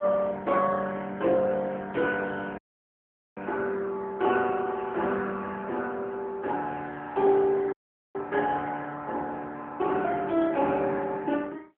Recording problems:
phone line; 220 Hz to 3.4 kHz, AMR-NB
dropout; at 2.5 s for 1 s and at 7.5 s

